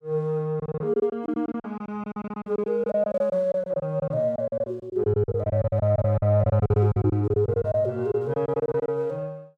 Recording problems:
lost packets; 18% of the sound replaced, filled with silence

